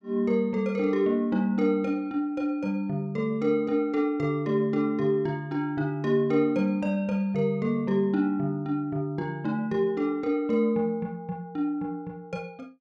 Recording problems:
none

